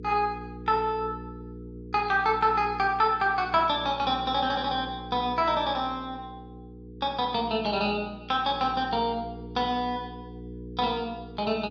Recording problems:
mains hum; 60 Hz, harmonics up to 480 Hz, SNR 15 dB

